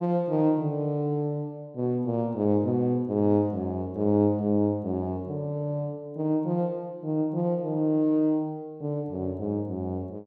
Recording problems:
none

